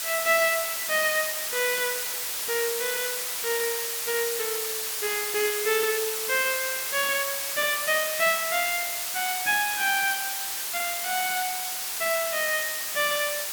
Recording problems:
hiss; slope +2 dB per octave, SNR 1 dB

